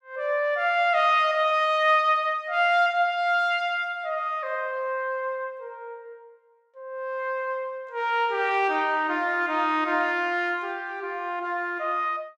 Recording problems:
none

